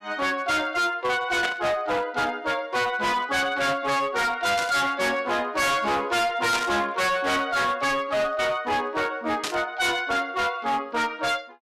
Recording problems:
distorted audio; hard clipping, signal-to-distortion ratio 6 dB
static burst; 4 times, first at 1.5 s; peak 0 dB vs average level

